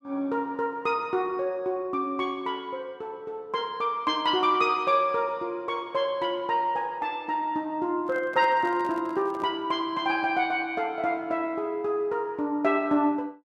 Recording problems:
microphone handling noise; from 8 to 9.5 s; peak -9 dB vs average level

